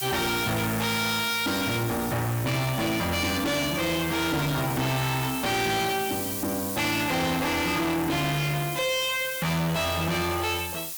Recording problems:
distorted audio; soft clipping, signal-to-distortion ratio 6 dB
background hiss; slope +1 dB per octave, SNR 7 dB

